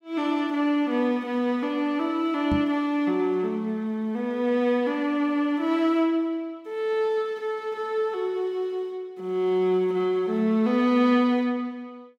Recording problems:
knock on the microphone; at 2.5 s; peak 0 dB vs average level

